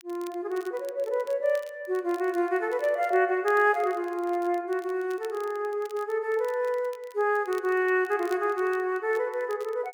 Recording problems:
crackle; vinyl, SNR 26 dB

